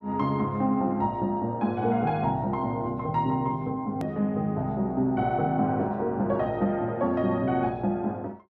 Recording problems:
click at an edit; at 4 s

